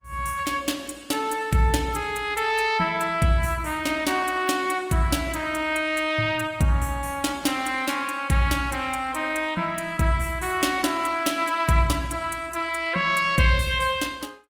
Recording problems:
lossy compression; Opus, log-spectral distance 4 dB, nothing above 18.5 kHz

